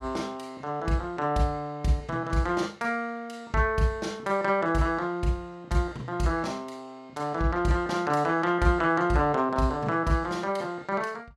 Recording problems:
none

